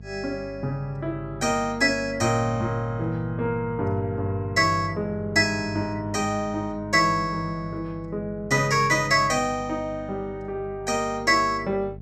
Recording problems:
mains hum; 50 Hz, harmonics up to 500 Hz, SNR 16 dB

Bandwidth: 13 kHz